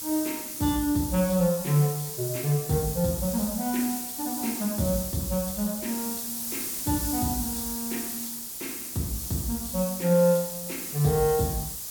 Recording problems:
hiss; SNR 4 dB

